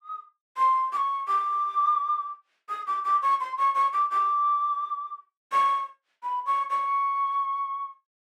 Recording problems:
none

